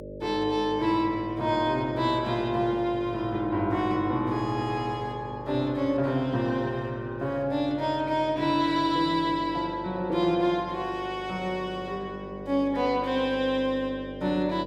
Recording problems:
hum; 50 Hz, harmonics up to 600 Hz, SNR 14 dB

